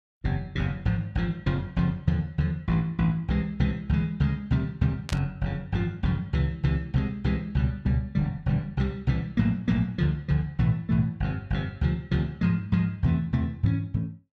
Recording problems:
burst of static; at 5 s; peak -4 dB vs average level

